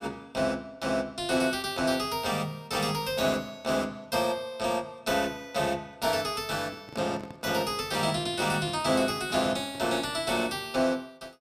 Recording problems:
microphone handling noise; from 6.5 to 10 s; peak -8 dB vs average level

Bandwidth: 14.5 kHz